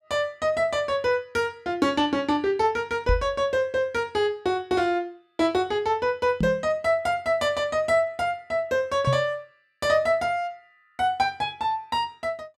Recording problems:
knock on the microphone; at 3 s, at 6.5 s and at 9 s; peak +4 dB vs average level

